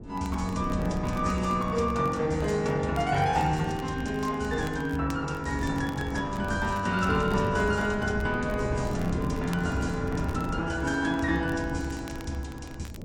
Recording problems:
lossy compression; AAC, log-spectral distance 2 dB
wind on the microphone; below 280 Hz, SNR 9 dB
crackling; vinyl, SNR 23 dB

